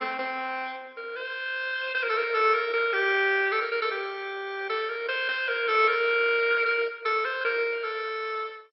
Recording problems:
codec artefacts; MP2, log-spectral distance 4 dB, nothing above 4.6 kHz

